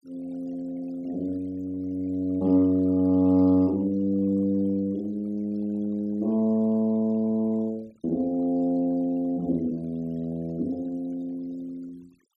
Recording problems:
noise reduction artefacts; signal-to-artefact ratio 28 dB

